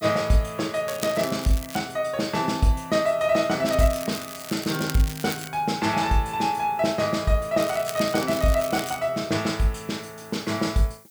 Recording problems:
hiss; SNR 24 dB
crackle; at 1 s, from 3.5 to 5.5 s and from 7.5 to 9 s; loose cable, SNR 12 dB

